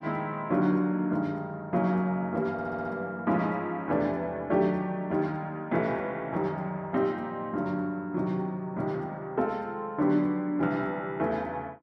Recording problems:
audio stuttering; at 2.5 s

